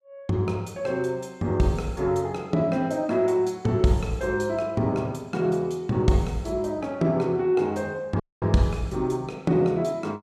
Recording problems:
audio cutting out; at 8 s

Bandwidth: 14.5 kHz